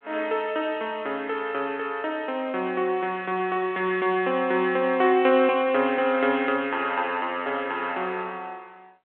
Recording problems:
phone line; 280 Hz to 3.4 kHz, G.726

